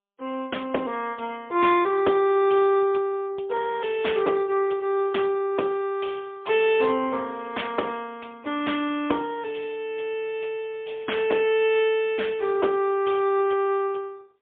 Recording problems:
phone line; 260 Hz to 3.5 kHz, AMR-NB, then MP3

